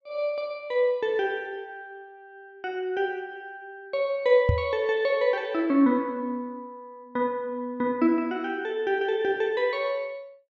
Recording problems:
low-pass filter; nothing above 8 kHz
knock on the microphone; at 4.5 s; peak +7 dB vs average level

